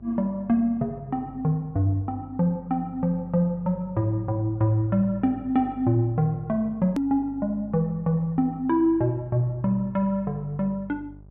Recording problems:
treble cut off; nothing above 3.8 kHz
electrical hum; 50 Hz, harmonics up to 600 Hz, SNR 21 dB
hard cut with a click; at 7 s

